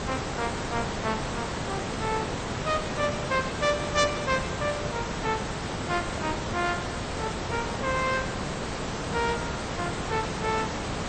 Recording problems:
codec artefacts; MP2, then AAC, log-spectral distance 13 dB, nothing above 7.1 kHz
hiss; slope -5 dB per octave, SNR 1 dB
wind noise; below 590 Hz, SNR 19 dB

